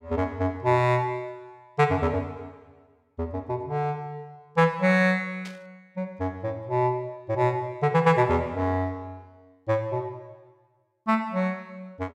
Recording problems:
burst of static; at 5.5 s; peak -12 dB vs average level

